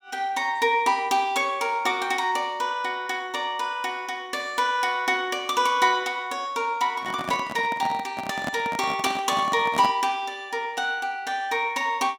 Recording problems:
microphone handling noise; from 7 to 10 s; peak -1 dB vs average level

